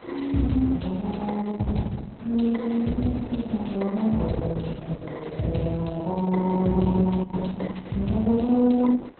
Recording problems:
lossy codec; Opus, log-spectral distance 4 dB, nothing above 4.1 kHz
background hiss; SNR 24 dB

